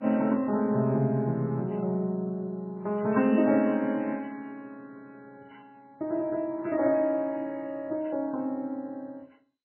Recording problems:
lossy codec; MP3, then MP2, log-spectral distance 2 dB, nothing above 2.7 kHz

